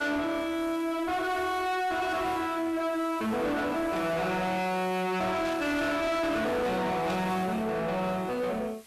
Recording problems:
distortion; soft clipping, signal-to-distortion ratio 7 dB
background hiss; slope -1 dB per octave, SNR 22 dB
static burst; at 4 s, at 5.5 s and at 7 s; peak -10 dB vs average level

